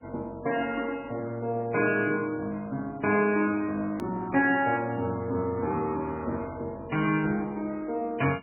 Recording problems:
lossy codec; MP2, then MP3, log-spectral distance 3 dB, nothing above 2.5 kHz
edit click; at 4 s

